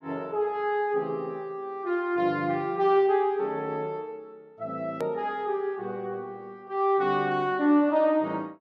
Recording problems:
hard cut with a click; at 5 s

